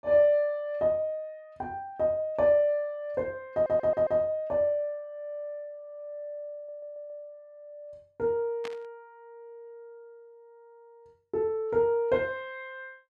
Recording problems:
stutter; at 3.5 s and at 6.5 s
static burst; at 8.5 s; peak -8 dB vs average level

